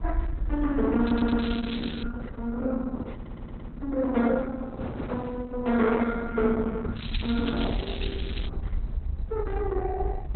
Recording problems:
lossy codec; Opus, log-spectral distance 3 dB, nothing above 3.8 kHz
rumble; below 62 Hz, SNR 5 dB
wind on the microphone; below 410 Hz, SNR 17 dB
stutter; at 1 s and at 3 s
crackle; at 1 s and from 7 to 8.5 s; loose cable, SNR 11 dB

